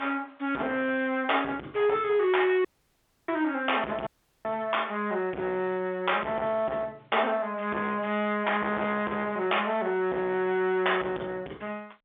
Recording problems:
telephone audio; 300 Hz to 3.6 kHz, G.711
distorted audio; soft clipping, signal-to-distortion ratio 12 dB
dropout; at 2.5 s for 0.5 s and at 4 s

